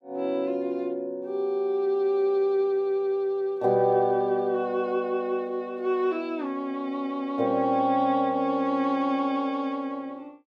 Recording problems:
none

